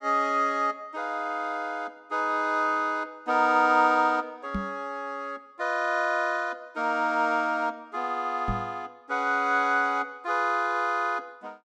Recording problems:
microphone bump; at 4.5 s and at 8.5 s; peak -1 dB vs average level

